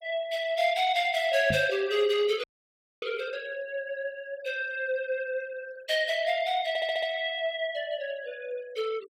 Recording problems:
noise reduction artefacts; signal-to-artefact ratio 21 dB
microphone thump; at 1.5 s; peak 0 dB vs average level
audio freezing; at 2.5 s for 0.5 s
stutter; at 6.5 s

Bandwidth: 16 kHz